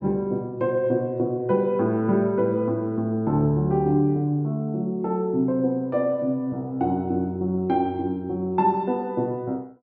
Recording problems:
none

